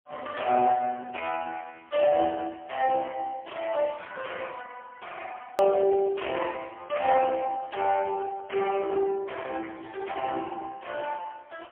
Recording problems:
phone line; 220 Hz to 3 kHz, AMR-NB, then MP3
hard cut with a click; at 5.5 s

